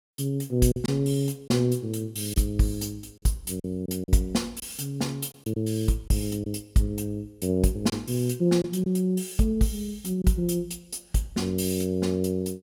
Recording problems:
packet loss; 3% of the sound replaced, filled with silence

